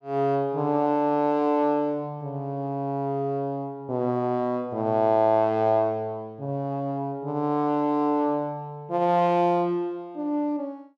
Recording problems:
none

